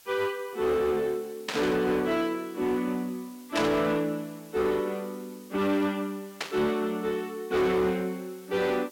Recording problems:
distortion; hard clipping, uneven, signal-to-distortion ratio 11 dB
background hiss; slope +1 dB per octave, SNR 23 dB
static burst; at 1.5 s, at 3.5 s and at 6.5 s; peak +2 dB vs average level

